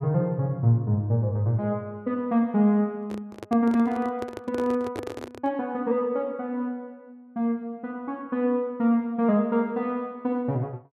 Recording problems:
microphone handling noise; from 3 to 5.5 s; peak -3 dB vs average level

